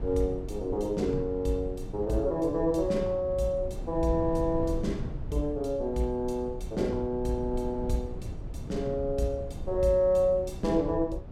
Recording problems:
rumble; below 120 Hz, SNR 10 dB

